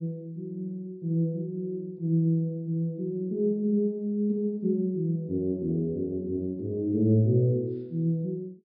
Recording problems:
treble missing; nothing above 5.5 kHz

